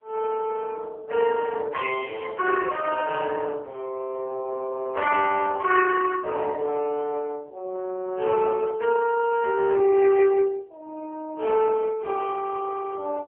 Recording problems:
phone line; 320 Hz to 2.6 kHz, AMR-NB

